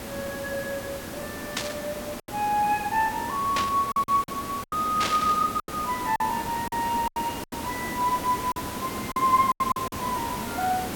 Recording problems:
background hiss; slope -5 dB per octave, SNR 7 dB
packet loss; 8% of the sound replaced, filled with silence
static burst; at 1.5 s, at 3.5 s and at 5 s; peak +3 dB vs average level

